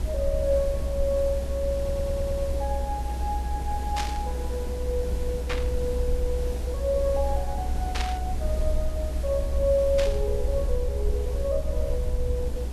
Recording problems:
background hiss; SNR 10 dB
rumble; below 64 Hz, strongest tone 62 Hz, SNR 1 dB
audio stuttering; at 2 s
burst of static; 4 times, first at 4 s; peak +2 dB vs average level

